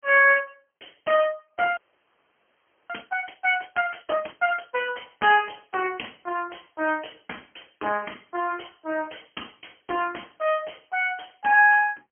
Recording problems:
phone line; 280 Hz to 3.3 kHz, AMR-NB
audio freezing; at 2 s for 1 s

